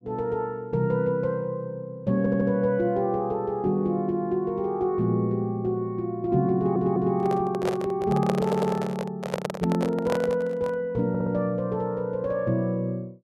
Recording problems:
audio stuttering; 4 times, first at 2 s
microphone handling noise; from 6.5 to 11 s; peak +1 dB vs average level

